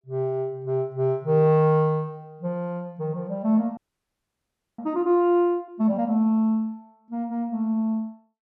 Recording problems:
audio freezing; at 4 s for 1 s

